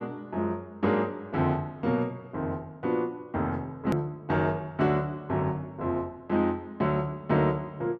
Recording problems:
hard cut with a click; at 4 s

